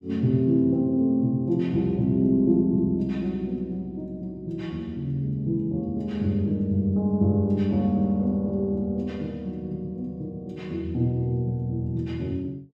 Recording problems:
none

